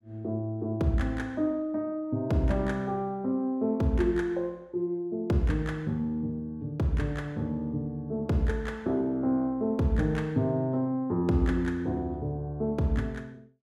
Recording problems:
none

